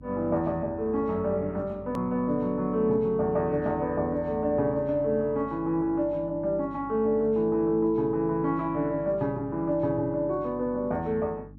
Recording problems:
hum; 50 Hz, harmonics up to 300 Hz, SNR 20 dB
click at an edit; at 2 s

